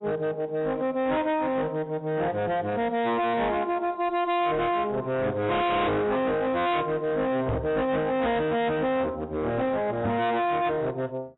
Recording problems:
lossy codec; AAC, log-spectral distance 2 dB, nothing above 3.9 kHz
distortion; hard clipping, signal-to-distortion ratio 7 dB
knock on the microphone; at 7.5 s and at 10 s; peak +2 dB vs average level

